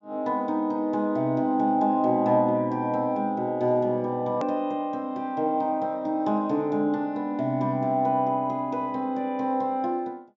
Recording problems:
treble missing; nothing above 8 kHz
edit click; at 4.5 s

